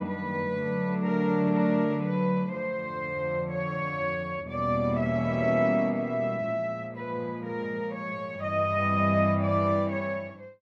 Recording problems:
none

